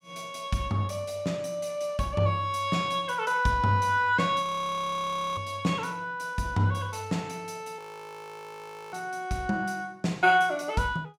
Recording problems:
frozen audio; at 4.5 s for 1 s and at 8 s for 1 s

